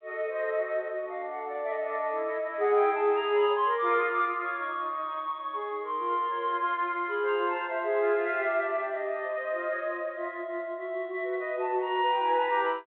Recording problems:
telephone audio; 300 Hz to 3.7 kHz, G.726

